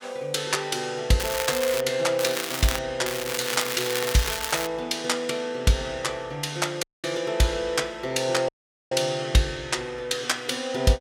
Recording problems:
crackle; at 1 s, at 2 s and from 3 to 4.5 s; loose cable, SNR 4 dB
audio cutting out; at 7 s and at 8.5 s

